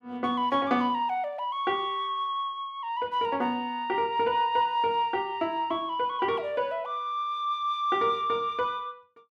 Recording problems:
none

